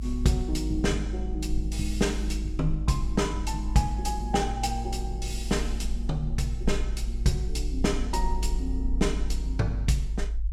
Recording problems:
rumble; below 52 Hz, strongest tone 52 Hz, SNR 3 dB

